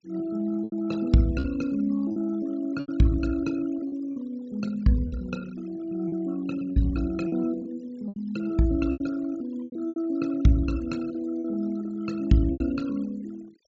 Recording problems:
treble cut off; nothing above 8 kHz
noise reduction artefacts; signal-to-artefact ratio 21 dB
lost packets; 7% of the sound replaced, filled with repeated pitch periods

